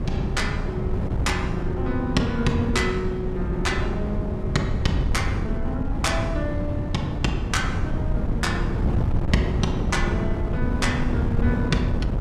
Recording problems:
wind on the microphone; below 190 Hz, SNR -1 dB

